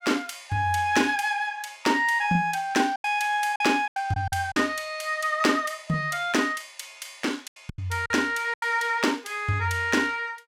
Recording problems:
lost packets; 6% of the sound replaced, filled with silence

